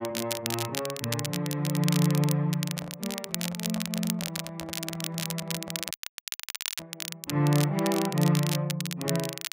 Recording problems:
crackling; vinyl, SNR 5 dB
handling noise; from 2.5 to 7 s; peak -8 dB vs average level
audio cutting out; at 6 s for 1 s

